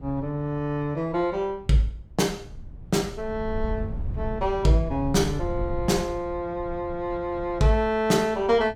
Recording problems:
low-frequency rumble; below 92 Hz, SNR 11 dB

